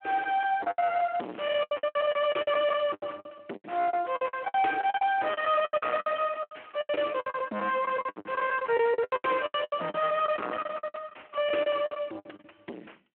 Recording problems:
phone line; 260 Hz to 3.4 kHz, Speex
distortion; soft clipping, signal-to-distortion ratio 6 dB
lost packets; 22% of the sound replaced, filled with the last packet
crackle; from 1 to 3 s, from 4.5 to 7 s and at 8.5 s; loose cable, SNR 28 dB

